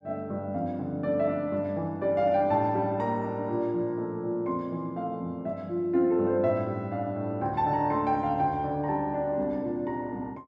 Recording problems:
none

